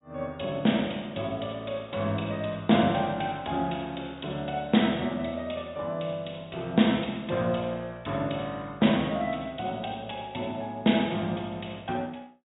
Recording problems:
low-pass filter; nothing above 4 kHz

